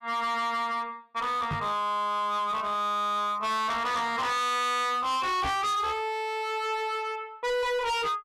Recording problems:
distorted audio; hard clipping, uneven, signal-to-distortion ratio 6 dB
microphone thump; at 1.5 s and at 5.5 s; peak -1 dB vs average level

